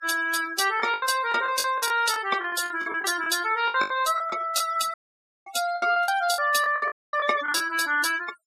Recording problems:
denoising artefacts; signal-to-artefact ratio 13 dB
packet loss; 13% of the sound replaced, filled with the last packet
dropout; at 5 s for 0.5 s and at 7 s

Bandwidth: 14.5 kHz